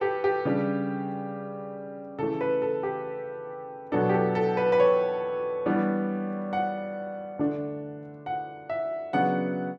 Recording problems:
none

